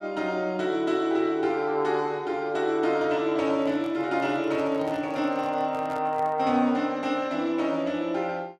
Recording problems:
microphone handling noise; from 3.5 to 6.5 s; peak -10 dB vs average level

